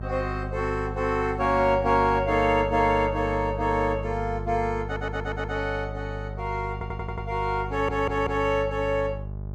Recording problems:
hum; 50 Hz, harmonics up to 650 Hz, SNR 9 dB
audio stuttering; at 5 s, at 6.5 s and at 7.5 s

